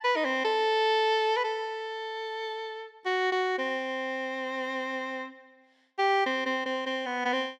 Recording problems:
none

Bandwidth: 15.5 kHz